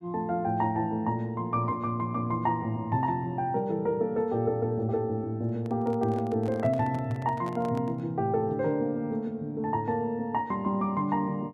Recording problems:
microphone handling noise; from 5.5 to 8 s; peak -10 dB vs average level

